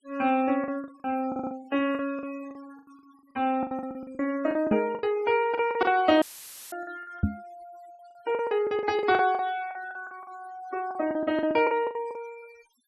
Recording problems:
denoising artefacts; signal-to-artefact ratio 21 dB
packet loss; 17% of the sound replaced, filled with the last packet
stutter; at 1.5 s
knock on the microphone; at 4.5 s and at 7 s; peak +6 dB vs average level
audio cutting out; at 6 s for 0.5 s; filled with static

